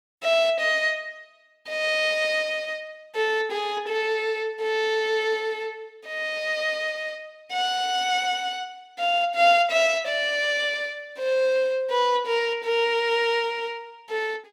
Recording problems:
none

